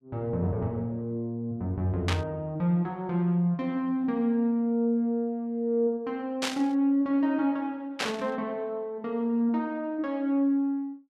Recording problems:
burst of static; at 2 s, at 6.5 s and at 8 s; peak +3 dB vs average level

